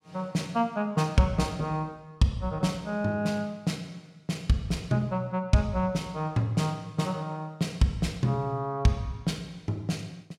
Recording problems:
none

